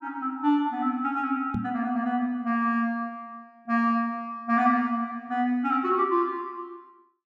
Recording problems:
microphone thump; at 1.5 s; peak 0 dB vs average level

